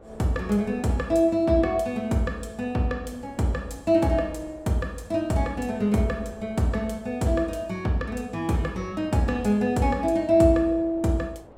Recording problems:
wind on the microphone; below 680 Hz, SNR 24 dB

